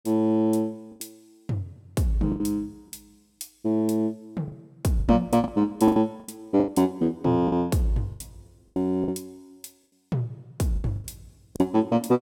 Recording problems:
packet loss; 11% of the sound replaced, filled with the last packet

